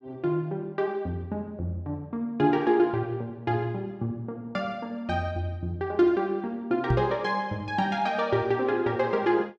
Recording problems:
knock on the microphone; at 7 s; peak +5 dB vs average level

